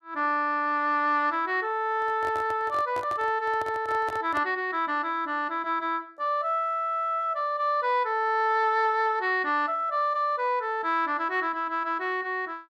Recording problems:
handling noise; from 2 to 4.5 s; peak -7 dB vs average level

